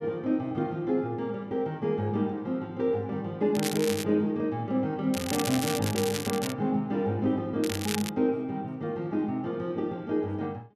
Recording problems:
crackle; at 3.5 s, from 5 to 6.5 s and at 7.5 s; loose cable, SNR 6 dB

